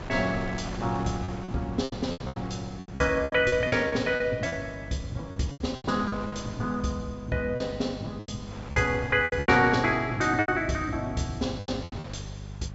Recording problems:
treble missing; nothing above 8 kHz
hum; 50 Hz, harmonics up to 450 Hz, SNR 15 dB
wind noise; below 1.1 kHz, SNR 17 dB
packet loss; 13% of the sound replaced, filled with repeated pitch periods

